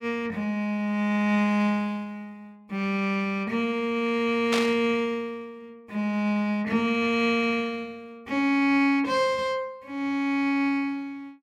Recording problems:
static burst; at 4.5 s; peak +2 dB vs average level

